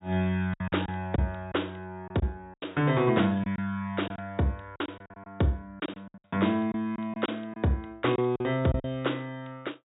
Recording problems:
treble cut off; nothing above 4 kHz
packet loss; 9% of the sound replaced, filled with silence

